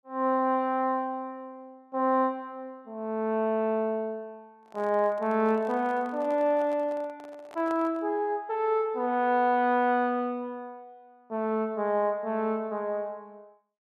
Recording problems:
microphone handling noise; from 4.5 to 8 s; peak -11 dB vs average level

